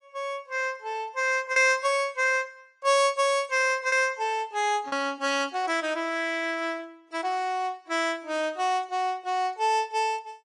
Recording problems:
codec artefacts; AAC, log-spectral distance 2 dB, nothing above 10.1 kHz
lost packets; 1.2% of the sound replaced, filled with repeated pitch periods

